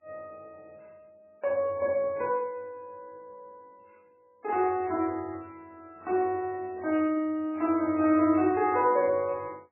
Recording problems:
codec artefacts; AAC, then MP3, log-spectral distance 2 dB, nothing above 2.6 kHz

